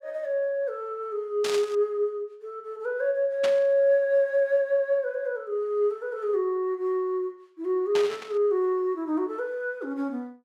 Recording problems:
burst of static; at 1.5 s, at 3.5 s and at 8 s; peak -2 dB vs average level

